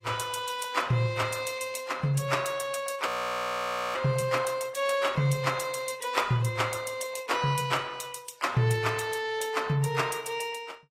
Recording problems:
lossy codec; AAC, log-spectral distance 4 dB
audio freezing; at 3 s for 1 s

